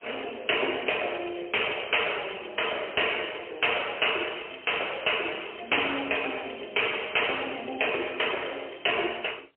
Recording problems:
telephone audio; 320 Hz to 3.2 kHz, AMR-NB, then MP3

